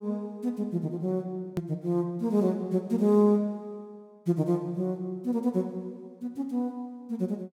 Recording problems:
hard cut with a click; at 1.5 s

